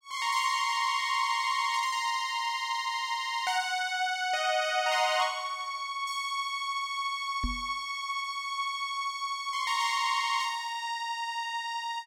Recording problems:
knock on the microphone; at 7.5 s; peak -1 dB vs average level

